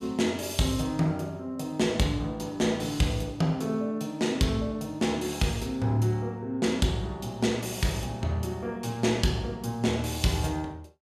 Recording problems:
none

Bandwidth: 14.5 kHz